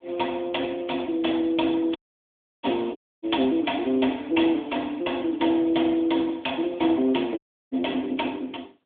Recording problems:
phone line; 190 Hz to 3.5 kHz, AMR-NB
audio cutting out; at 2 s for 0.5 s, at 3 s and at 7.5 s

